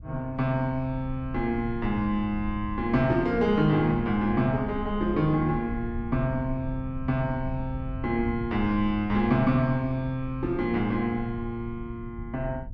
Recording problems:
rumble; below 96 Hz, SNR 12 dB

